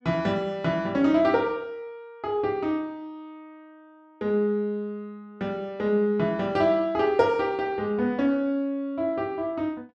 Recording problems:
none

